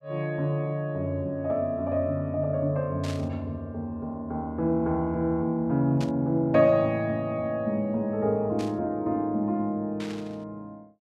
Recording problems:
static burst; 4 times, first at 3 s; peak -9 dB vs average level

